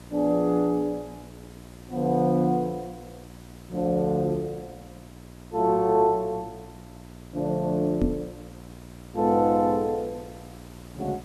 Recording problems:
hum; 60 Hz, harmonics up to 1.3 kHz, SNR 20 dB
hiss; slope -4 dB per octave, SNR 27 dB
microphone bump; at 8 s; peak +3 dB vs average level

